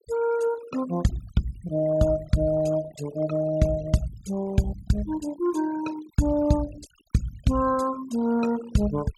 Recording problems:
noise reduction artefacts; signal-to-artefact ratio 19 dB

